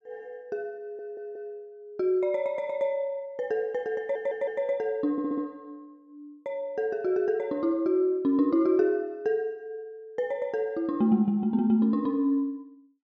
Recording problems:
audio stuttering; at 1 s, at 4 s and at 5 s

